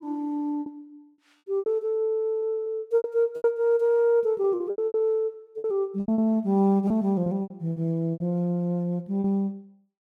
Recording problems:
packet loss; 12% of the sound replaced, filled with repeated pitch periods

